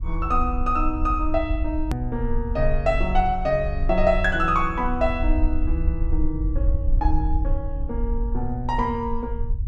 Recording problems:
low-frequency rumble; below 58 Hz, SNR 2 dB
click at an edit; at 2 s

